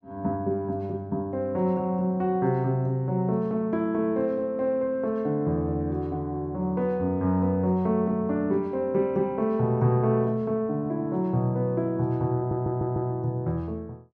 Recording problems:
stutter; at 12 s

